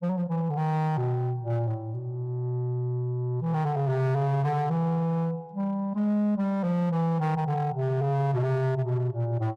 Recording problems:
distortion; hard clipping, uneven, signal-to-distortion ratio 11 dB

